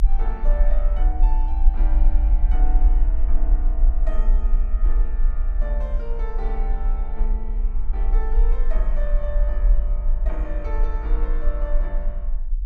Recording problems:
rumble; below 42 Hz, strongest tone 28 Hz, SNR -13 dB

